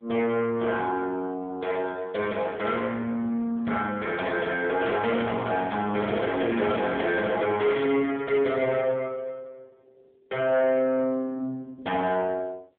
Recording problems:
phone line; 190 Hz to 3.5 kHz, AMR-NB
distorted audio; soft clipping, signal-to-distortion ratio 12 dB

